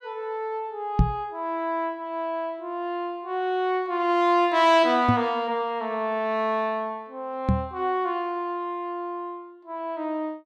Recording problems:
microphone thump; at 1 s, at 5 s and at 7.5 s; peak +9 dB vs average level

